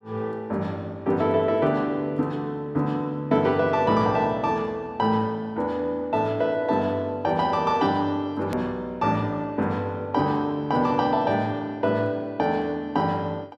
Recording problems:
hard cut with a click; at 8.5 s

